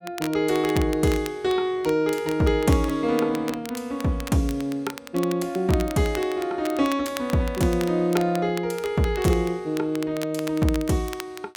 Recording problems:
crackling; vinyl, SNR 16 dB

